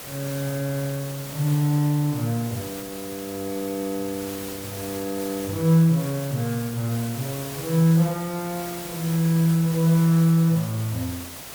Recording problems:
hiss; slope -2 dB per octave, SNR 12 dB

